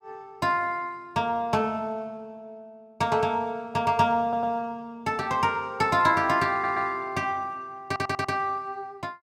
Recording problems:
stutter; at 4 s, at 6.5 s and at 8 s

